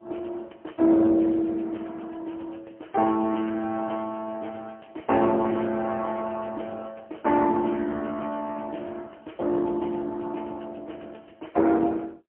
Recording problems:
phone line; 240 Hz to 3.2 kHz, AMR-NB, then MP3

